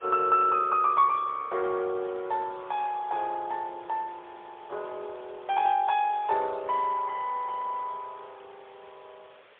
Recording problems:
telephone audio; 340 Hz to 3.6 kHz, AMR-NB, then MP3
hiss; SNR 26 dB

